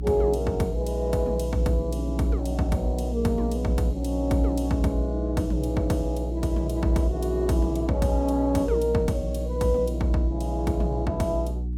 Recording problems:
mains hum; 60 Hz, harmonics up to 360 Hz, SNR 4 dB

